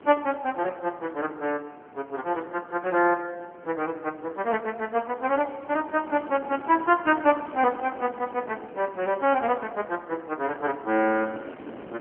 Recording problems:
phone line; 240 Hz to 3.1 kHz, AMR-NB
wind noise; below 660 Hz, SNR 19 dB

